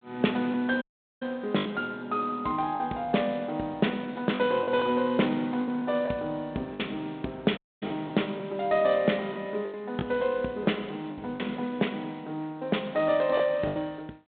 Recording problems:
phone line; 170 Hz to 3.6 kHz, G.726
packet loss; 6% of the sound replaced, filled with the last packet
dropout; at 1 s and at 7.5 s

